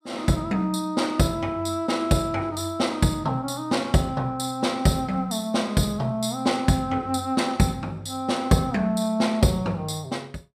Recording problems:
none

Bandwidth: 15 kHz